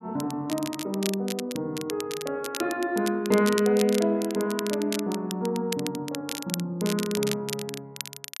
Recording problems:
crackle; vinyl, SNR 9 dB

